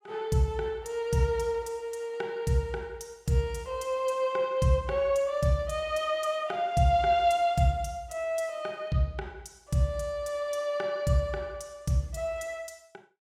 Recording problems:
none

